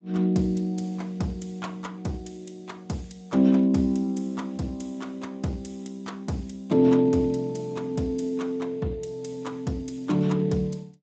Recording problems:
lossy compression; Speex, log-spectral distance 4 dB, nothing above 7.8 kHz

